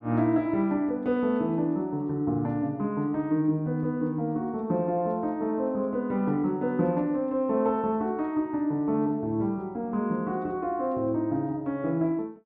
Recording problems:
none

